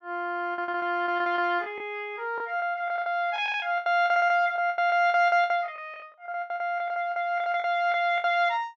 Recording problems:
low-pass filter; nothing above 8 kHz
packet loss; 16% of the sound replaced, filled with the last packet

